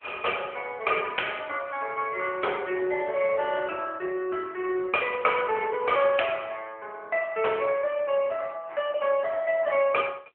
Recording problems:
telephone audio; 320 Hz to 3.3 kHz, AMR-NB

